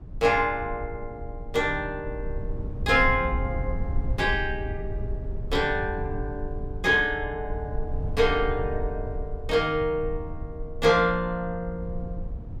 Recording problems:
rumble; below 84 Hz, SNR 9 dB

